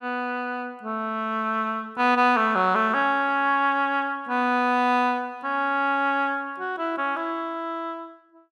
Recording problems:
none

